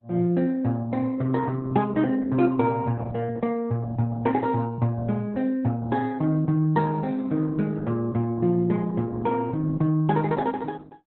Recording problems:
lossy compression; Opus, log-spectral distance 2 dB, nothing above 3.9 kHz

